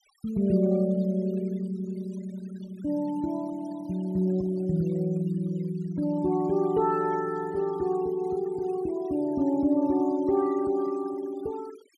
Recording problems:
denoising artefacts; signal-to-artefact ratio 23 dB

